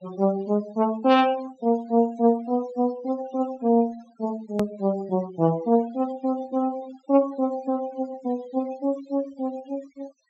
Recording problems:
treble cut off; nothing above 7.8 kHz
noise reduction artefacts; signal-to-artefact ratio 21 dB
hard cut with a click; at 4.5 s

